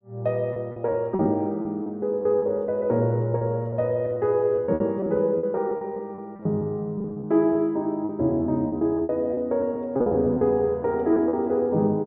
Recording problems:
packet loss; 12% of the sound replaced, filled with repeated pitch periods

